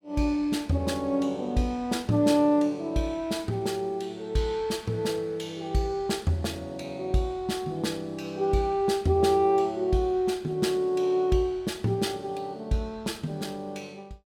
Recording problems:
none

